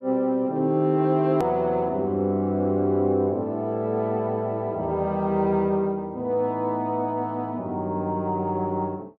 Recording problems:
click at an edit; at 1.5 s

